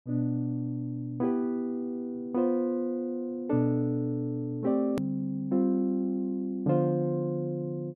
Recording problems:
hard cut with a click; at 5 s

